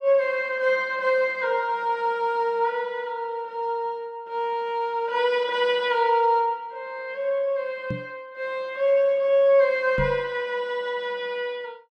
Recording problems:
microphone bump; at 8 s and at 10 s; peak -1 dB vs average level

